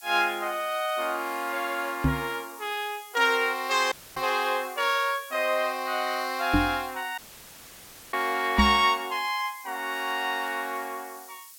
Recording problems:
hiss; SNR 18 dB
microphone thump; 4 times, first at 2 s; peak +7 dB vs average level
audio cutting out; at 4 s and at 7 s for 1 s

